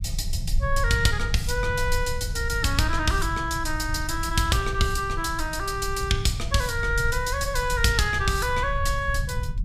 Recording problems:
rumble; below 84 Hz, SNR 6 dB

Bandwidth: 15.5 kHz